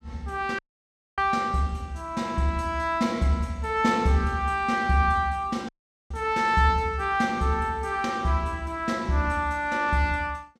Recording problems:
dropout; at 0.5 s for 0.5 s and at 5.5 s

